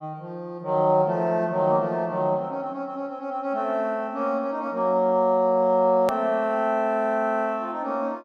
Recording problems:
hard cut with a click; at 6 s

